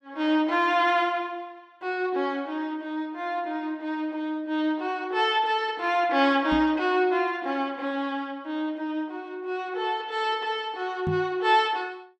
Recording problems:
microphone thump; at 6.5 s and at 11 s; peak 0 dB vs average level

